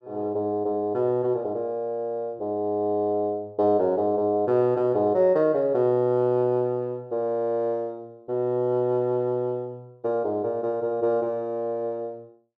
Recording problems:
none

